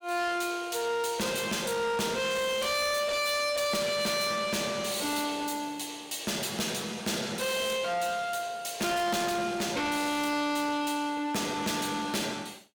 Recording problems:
distorted audio; soft clipping, signal-to-distortion ratio 6 dB

